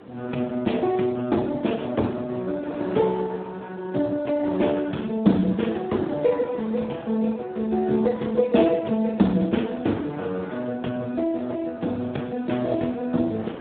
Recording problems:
phone line; 150 Hz to 3.7 kHz, Speex
wind on the microphone; below 780 Hz, SNR 17 dB

